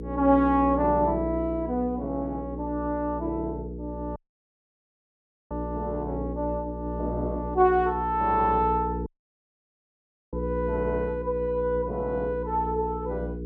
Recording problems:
hum; 60 Hz, harmonics up to 480 Hz, SNR 8 dB
audio cutting out; at 4 s for 1.5 s and at 9 s for 1.5 s

